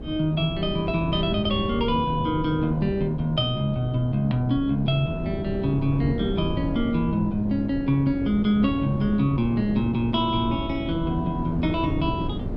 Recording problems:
wind noise; below 300 Hz, SNR 7 dB

